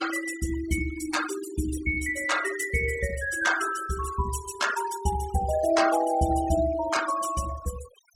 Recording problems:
noise reduction artefacts; signal-to-artefact ratio 10 dB

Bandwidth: 17.5 kHz